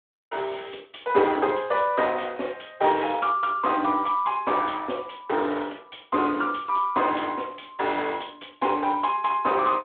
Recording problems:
phone line; 260 Hz to 3.6 kHz, Speex

